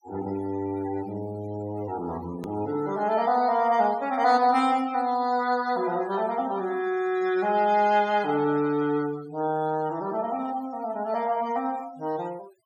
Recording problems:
denoising artefacts; signal-to-artefact ratio 20 dB
edit click; at 2.5 s

